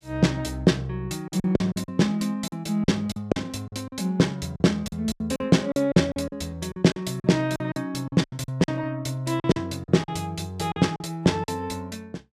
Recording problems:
packet loss; 12% of the sound replaced, filled with silence

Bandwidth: 15 kHz